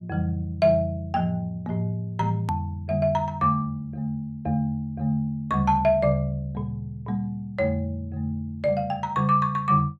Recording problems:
edit click; at 2.5 s

